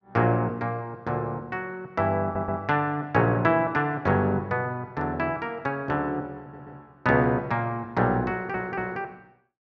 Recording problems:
stutter; at 2 s, at 6.5 s and at 8.5 s

